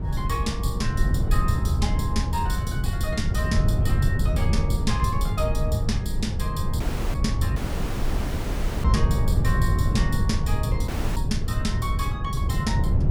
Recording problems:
wind noise; below 120 Hz, SNR -5 dB
dropout; at 7 s, at 7.5 s for 1.5 s and at 11 s

